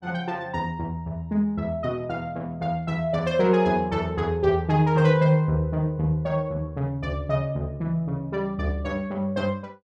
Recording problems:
none

